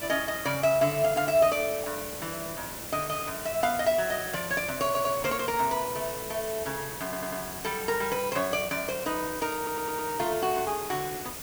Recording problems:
background hiss; slope -3 dB per octave, SNR 7 dB
audio stuttering; at 5 s, at 7 s and at 9.5 s

